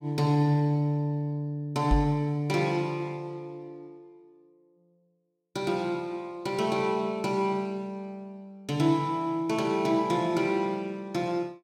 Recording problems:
knock on the microphone; at 2 s; peak +6 dB vs average level

